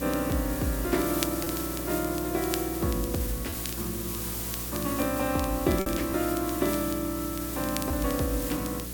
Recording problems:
hum; 60 Hz, harmonics up to 660 Hz, SNR 10 dB
background hiss; slope 0 dB per octave, SNR 5 dB
crackling; vinyl, SNR 13 dB
packet loss; 1.6% of the sound replaced, filled with repeated pitch periods

